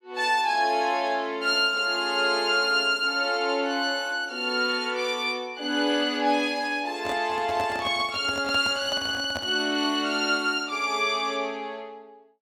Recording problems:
microphone handling noise; from 7 to 9.5 s; peak -5 dB vs average level

